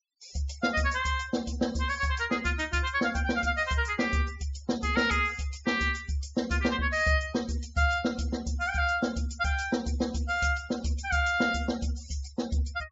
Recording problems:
treble missing; nothing above 8 kHz
denoising artefacts; signal-to-artefact ratio 19 dB

